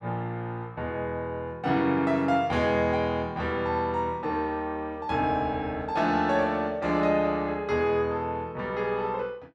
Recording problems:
none

